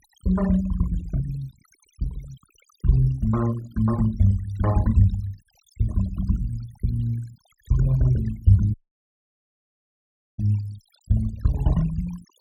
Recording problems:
noise reduction artefacts; signal-to-artefact ratio 22 dB
dropout; at 8.5 s for 1.5 s

